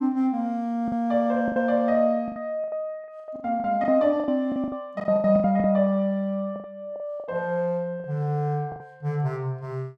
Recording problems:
lost packets; 14% of the sound replaced, filled with the last packet

